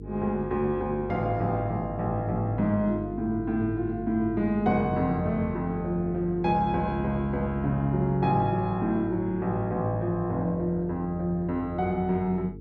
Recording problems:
mains hum; 50 Hz, harmonics up to 450 Hz, SNR 12 dB

